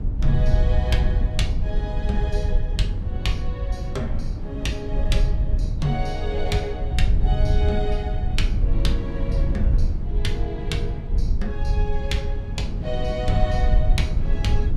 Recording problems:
low-frequency rumble; below 68 Hz, SNR -4 dB
wind noise; below 230 Hz, SNR 6 dB

